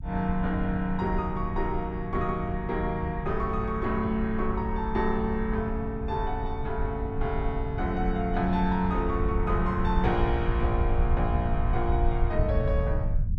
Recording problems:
rumble; below 86 Hz, SNR 3 dB

